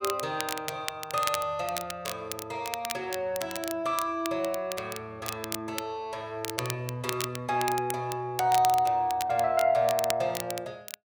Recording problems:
crackling; vinyl, SNR 8 dB

